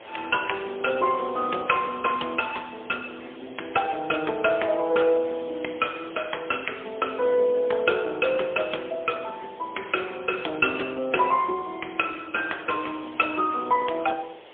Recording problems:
telephone audio; 320 Hz to 3.4 kHz, AMR-NB, then MP3
hiss; SNR 19 dB

